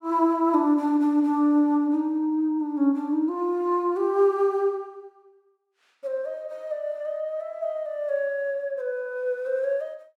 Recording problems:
none

